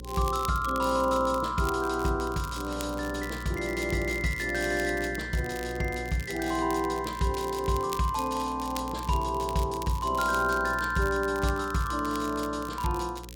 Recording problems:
electrical hum; 60 Hz, harmonics up to 540 Hz, SNR 14 dB
crackling; vinyl, SNR 16 dB

